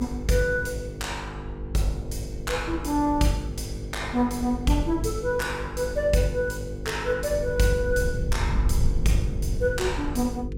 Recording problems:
hum; 50 Hz, harmonics up to 500 Hz, SNR 10 dB
low-frequency rumble; below 94 Hz, SNR 7 dB

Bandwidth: 16.5 kHz